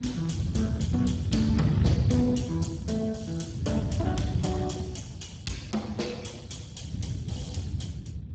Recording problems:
lossy codec; Speex, log-spectral distance 4 dB, nothing above 7.6 kHz
wind on the microphone; below 170 Hz, SNR 1 dB

